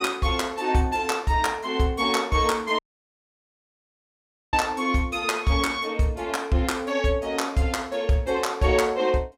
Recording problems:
dropout; at 3 s for 1.5 s

